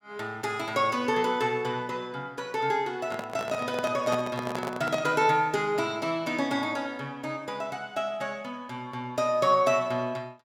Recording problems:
handling noise; from 3 to 5 s; peak +1 dB vs average level

